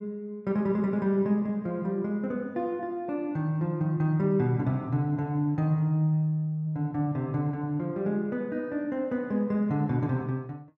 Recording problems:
none

